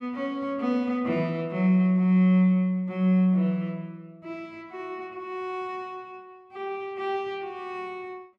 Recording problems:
none

